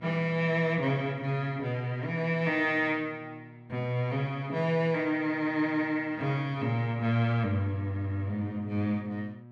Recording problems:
hum; 60 Hz, harmonics up to 960 Hz, SNR 20 dB

